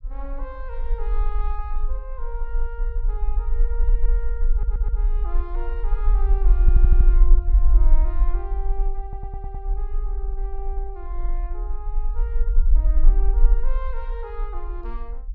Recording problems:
rumble; below 44 Hz, strongest tone 22 Hz, SNR -15 dB
audio stuttering; at 4.5 s, at 6.5 s and at 9 s

